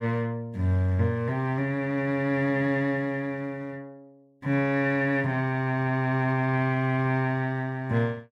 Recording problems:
none

